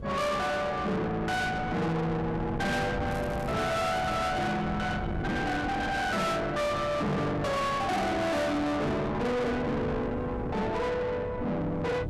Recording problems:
distortion; soft clipping, signal-to-distortion ratio 6 dB
wind on the microphone; below 730 Hz, SNR 7 dB
crackling; from 3 to 4 s; loose cable, SNR 19 dB

